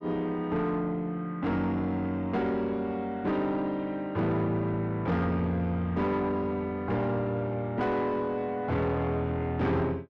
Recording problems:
distortion; soft clipping, signal-to-distortion ratio 10 dB

